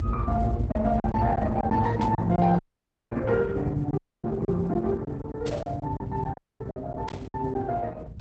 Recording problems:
codec artefacts; Opus, then Opus, log-spectral distance 2 dB, nothing above 7.6 kHz
rumble; below 120 Hz, SNR 4 dB
packet loss; 9% of the sound replaced, filled with silence
static burst; at 2 s, at 5.5 s and at 7 s; peak -9 dB vs average level
dropout; at 2.5 s for 0.5 s, at 4 s and at 6.5 s

